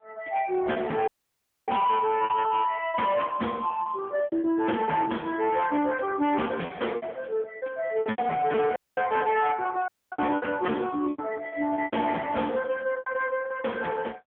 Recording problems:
telephone audio; 190 Hz to 3.3 kHz, AMR-NB
distorted audio; hard clipping, uneven, signal-to-distortion ratio 10 dB
packet loss; 11% of the sound replaced, filled with repeated pitch periods
audio cutting out; at 1 s for 0.5 s, at 9 s and at 10 s

